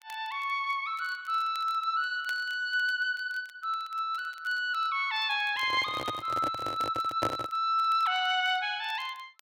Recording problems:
crackling; vinyl, SNR 26 dB
microphone handling noise; from 5.5 to 7.5 s; peak +1 dB vs average level

